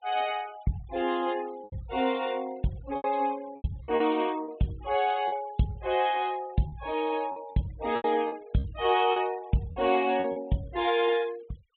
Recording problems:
treble missing; nothing above 4 kHz
noise reduction artefacts; signal-to-artefact ratio 23 dB
packet loss; 7% of the sound replaced, filled with repeated pitch periods

